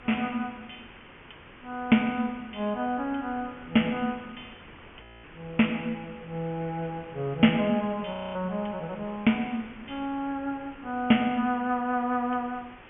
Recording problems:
low-pass filter; nothing above 3.2 kHz
background hiss; SNR 21 dB
wind noise; below 1.2 kHz, SNR 24 dB
frozen audio; at 5 s and at 8 s

